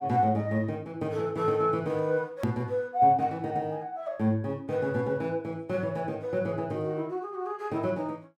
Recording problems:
click at an edit; at 2.5 s

